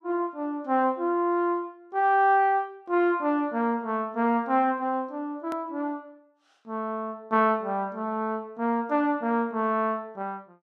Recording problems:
hard cut with a click; at 5.5 s

